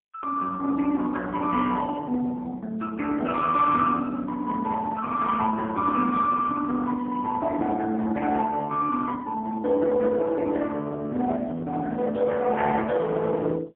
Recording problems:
telephone audio; 240 Hz to 3.5 kHz, AMR-NB, then MP3
distortion; hard clipping, uneven, signal-to-distortion ratio 14 dB

